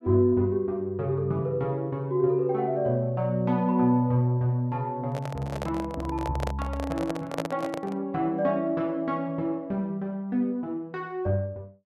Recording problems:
handling noise; from 5 to 8 s; peak +2 dB vs average level

